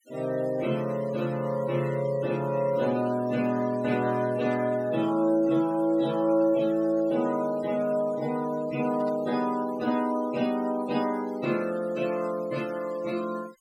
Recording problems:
noise reduction artefacts; signal-to-artefact ratio 21 dB
burst of static; at 4.5 s and at 9 s; peak -19 dB vs average level

